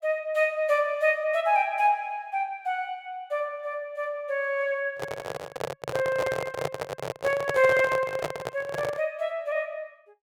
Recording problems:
microphone handling noise; from 5 to 9 s; peak +2 dB vs average level

